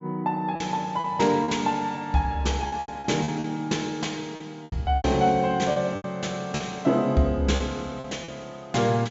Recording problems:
low-pass filter; nothing above 8 kHz
packet loss; 9% of the sound replaced, filled with repeated pitch periods

